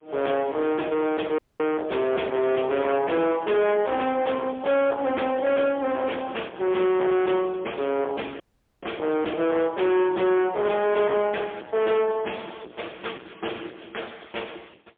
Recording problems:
telephone audio; 280 Hz to 3.4 kHz, AMR-NB, then MP3
distorted audio; soft clipping, signal-to-distortion ratio 6 dB
dropout; at 1.5 s and at 8.5 s

